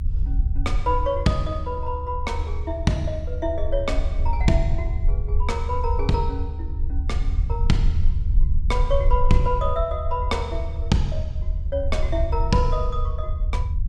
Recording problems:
rumble; below 74 Hz, SNR 0 dB

